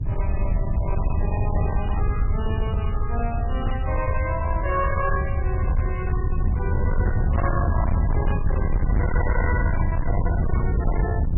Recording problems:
lossy codec; MP3, log-spectral distance 3 dB, nothing above 2.6 kHz
distorted audio; hard clipping, signal-to-distortion ratio 6 dB
low-frequency rumble; below 96 Hz, SNR -4 dB

